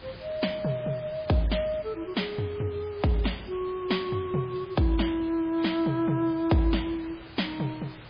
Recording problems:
lossy compression; MP3, log-spectral distance 6 dB
background hiss; SNR 18 dB

